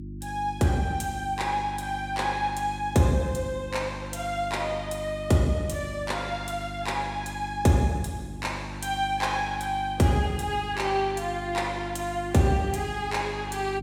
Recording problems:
electrical hum; 50 Hz, harmonics up to 350 Hz, SNR 11 dB

